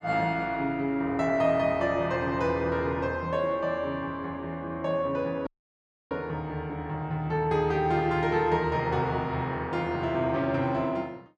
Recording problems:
audio cutting out; at 5.5 s for 0.5 s

